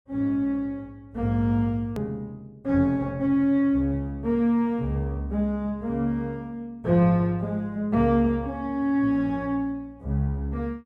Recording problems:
hard cut with a click; at 2 s

